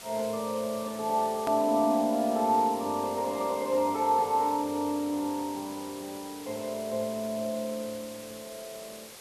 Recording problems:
lossy codec; Vorbis, log-spectral distance 6 dB, nothing above 13.1 kHz
hiss; slope -1 dB per octave, SNR 15 dB
click at an edit; at 1.5 s

